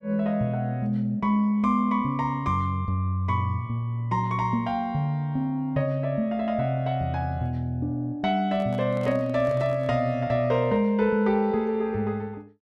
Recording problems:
microphone handling noise; from 8.5 to 10 s; peak -10 dB vs average level

